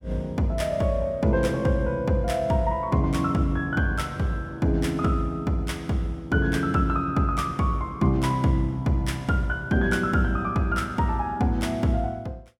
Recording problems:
none

